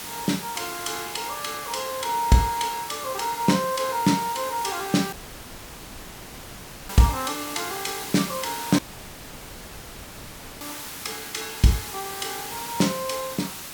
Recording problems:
hiss; slope -1 dB per octave, SNR 8 dB
dropout; at 5 s for 2 s and at 9 s for 2 s

